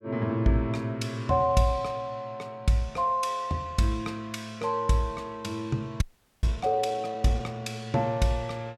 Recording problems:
audio freezing; at 6 s

